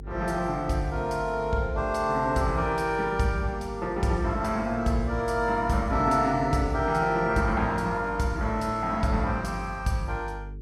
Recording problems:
hum; 50 Hz, harmonics up to 450 Hz, SNR 15 dB

